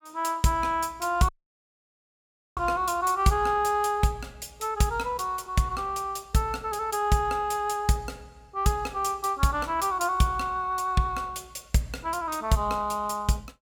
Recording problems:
dropout; at 1.5 s for 1.5 s

